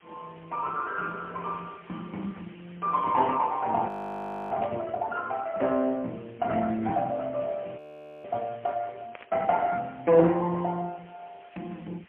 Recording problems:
phone line; 190 Hz to 3.2 kHz, AMR-NB, then MP3
hiss; SNR 27 dB
frozen audio; at 4 s for 0.5 s and at 8 s
burst of static; at 4.5 s and at 9 s; peak -13 dB vs average level

